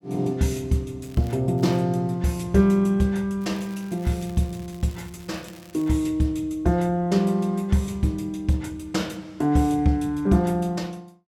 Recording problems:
crackling; at 1 s, at 1.5 s and from 3.5 to 6 s; loose cable, SNR 27 dB

